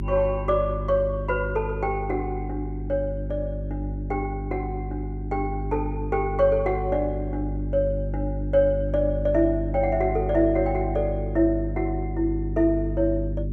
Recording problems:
hum; 50 Hz, harmonics up to 400 Hz, SNR 5 dB

